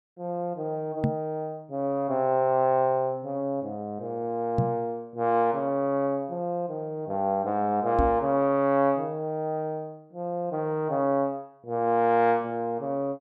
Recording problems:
knock on the microphone; at 1 s, at 4.5 s and at 8 s; peak +5 dB vs average level

